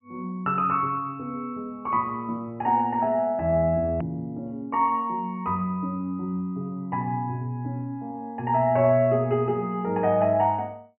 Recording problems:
treble missing; nothing above 3 kHz
edit click; at 4 s

